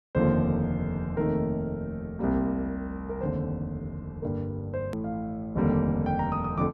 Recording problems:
click at an edit; at 5 s

